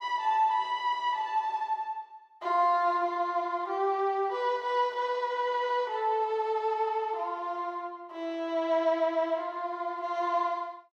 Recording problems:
none

